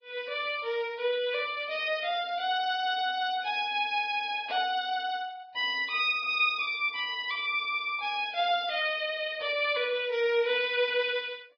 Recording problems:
lossy codec; Vorbis, log-spectral distance 3 dB, nothing above 5.2 kHz

